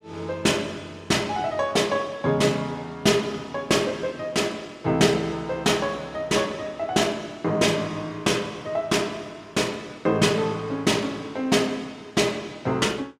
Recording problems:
none

